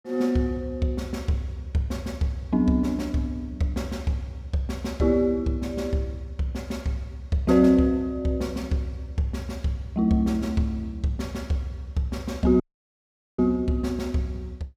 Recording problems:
dropout; at 13 s for 1 s

